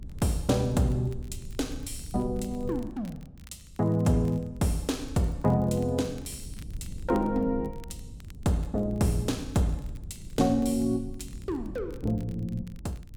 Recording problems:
rumble; below 110 Hz, SNR 14 dB
crackle; vinyl, SNR 29 dB

